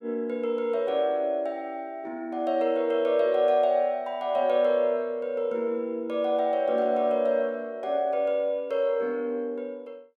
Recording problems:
none

